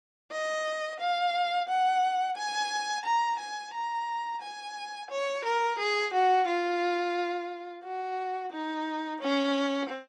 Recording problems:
lossy compression; AAC, log-spectral distance 2 dB, nothing above 11 kHz

